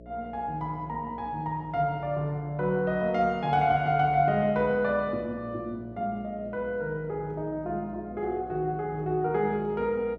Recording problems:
electrical hum; 60 Hz, harmonics up to 660 Hz, SNR 20 dB

